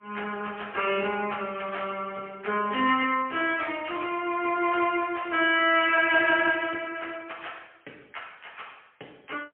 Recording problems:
phone line; 280 Hz to 3.2 kHz, AMR-NB, then MP3

